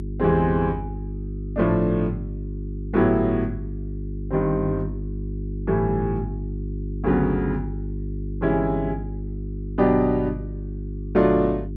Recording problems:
hum; 50 Hz, harmonics up to 400 Hz, SNR 8 dB

